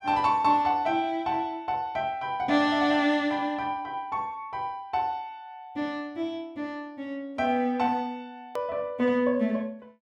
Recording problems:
edit click; at 8.5 s

